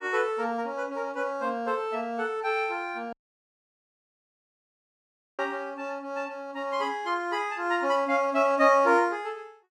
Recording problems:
dropout; at 3 s for 2.5 s

